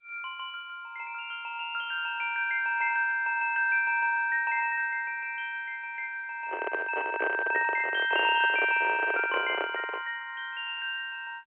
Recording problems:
telephone audio; 150 Hz to 3.2 kHz, G.711
microphone handling noise; from 6.5 to 10 s; peak +1 dB vs average level

